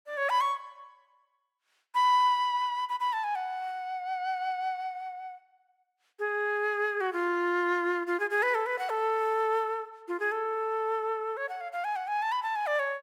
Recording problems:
none

